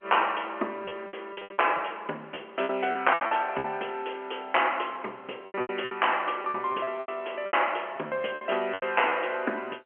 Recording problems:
telephone audio; 240 Hz to 3.1 kHz, G.711
lost packets; 13% of the sound replaced, filled with repeated pitch periods

